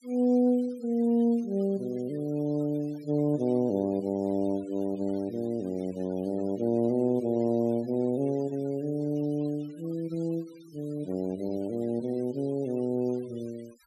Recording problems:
denoising artefacts; signal-to-artefact ratio 26 dB

